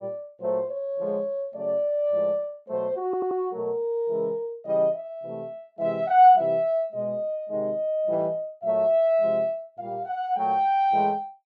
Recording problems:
audio stuttering; at 3 s

